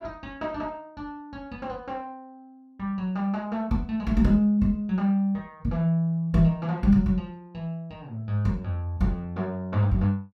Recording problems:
none

